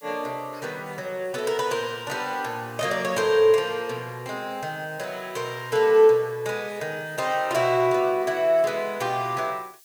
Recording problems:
background hiss; slope +5 dB per octave, SNR 27 dB

